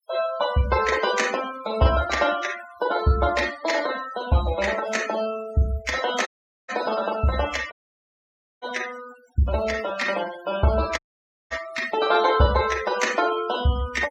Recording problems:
denoising artefacts; signal-to-artefact ratio 12 dB
dropout; at 6.5 s, at 7.5 s for 1 s and at 11 s for 0.5 s

